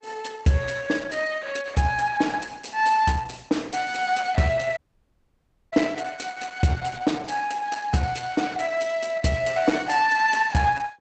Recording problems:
lossy codec; Opus, log-spectral distance 5 dB, nothing above 8 kHz
audio cutting out; at 5 s for 1 s

